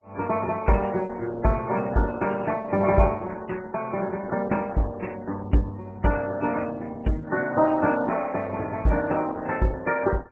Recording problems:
lossy compression; MP3, then Opus, log-spectral distance 5 dB

